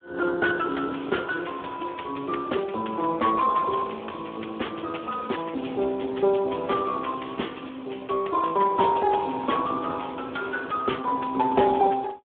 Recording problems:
phone line; 280 Hz to 3.4 kHz, Speex

